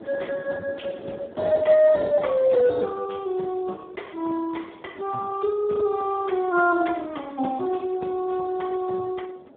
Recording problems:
phone line; 220 Hz to 2 kHz, Speex
wind noise; below 570 Hz, SNR 23 dB

